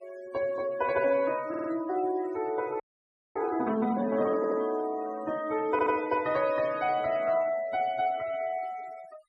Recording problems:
denoising artefacts; signal-to-artefact ratio 19 dB
audio stuttering; at 1.5 s, at 4.5 s and at 5.5 s
audio freezing; at 3 s for 0.5 s

